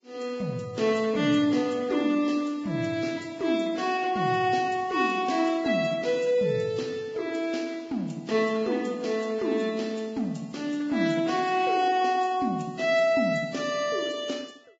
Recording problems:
codec artefacts; Vorbis, log-spectral distance 3 dB, nothing above 7.3 kHz

